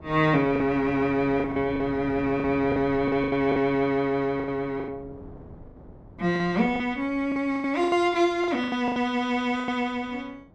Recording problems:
wind noise; below 390 Hz, SNR 19 dB
lost packets; 12% of the sound replaced, filled with the last packet

